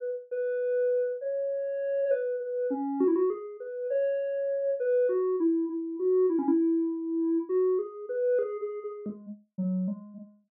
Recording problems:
none

